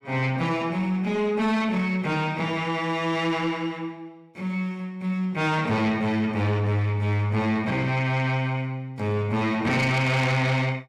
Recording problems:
distortion; soft clipping, signal-to-distortion ratio 11 dB

